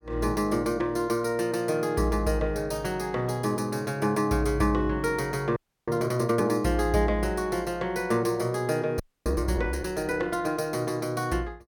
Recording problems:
audio freezing; at 5.5 s and at 9 s

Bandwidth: 17.5 kHz